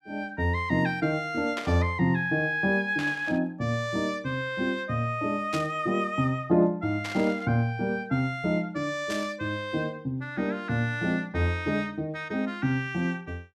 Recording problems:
burst of static; 5 times, first at 1.5 s; peak -3 dB vs average level

